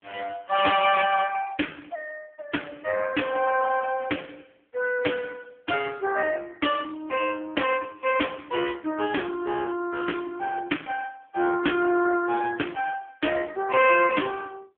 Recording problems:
telephone audio; 220 Hz to 3.3 kHz, AMR-NB

